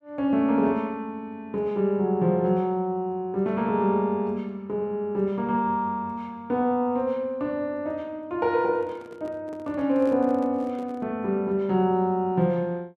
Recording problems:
handling noise; from 8.5 to 11 s; peak -10 dB vs average level

